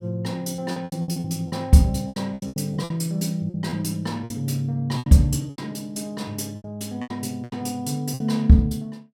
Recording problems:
packet loss; 13% of the sound replaced, filled with repeated pitch periods

